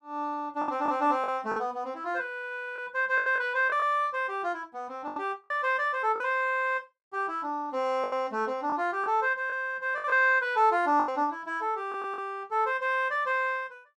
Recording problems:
lost packets; 6% of the sound replaced, filled with the last packet

